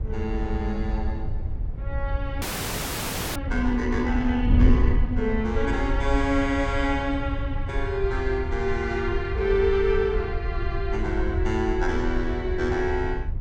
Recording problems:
wind on the microphone; below 80 Hz, SNR 3 dB
frozen audio; at 2.5 s for 1 s

